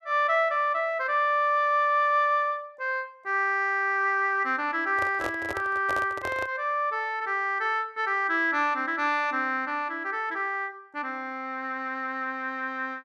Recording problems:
microphone handling noise; from 5 to 6.5 s; peak -3 dB vs average level

